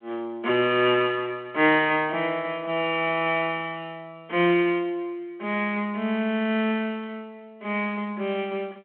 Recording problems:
phone line; 260 Hz to 3.3 kHz, G.726

